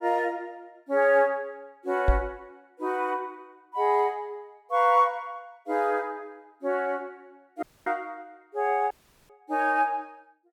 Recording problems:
microphone bump; at 2 s; peak +6 dB vs average level
audio cutting out; at 7.5 s and at 9 s

